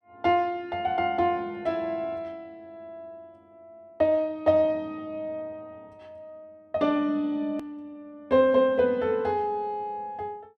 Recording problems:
edit click; at 7.5 s

